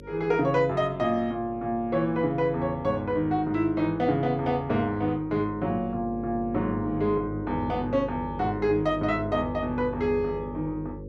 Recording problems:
hum; 50 Hz, harmonics up to 550 Hz, SNR 13 dB

